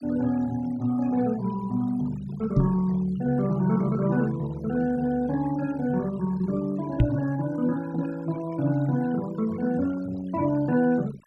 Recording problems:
noise reduction artefacts; signal-to-artefact ratio 21 dB
microphone thump; at 2.5 s and at 7 s; peak +9 dB vs average level

